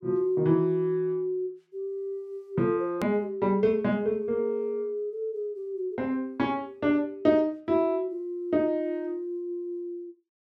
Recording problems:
edit click; at 3 s

